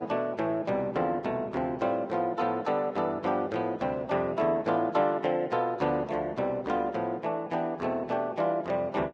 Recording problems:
lossy compression; Vorbis, log-spectral distance 2 dB

